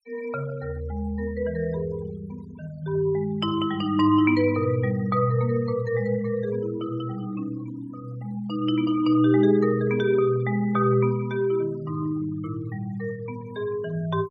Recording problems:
noise reduction artefacts; signal-to-artefact ratio 23 dB

